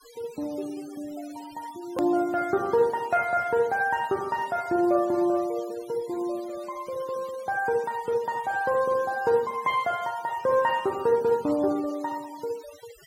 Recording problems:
noise reduction artefacts; signal-to-artefact ratio 21 dB
hard cut with a click; at 2 s

